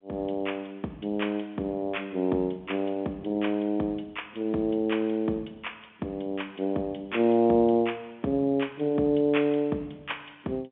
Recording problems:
phone line; 150 Hz to 3.6 kHz, G.711

